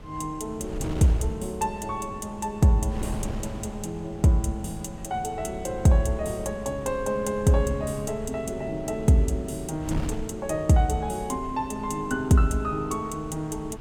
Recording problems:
wind on the microphone; below 200 Hz, SNR 13 dB

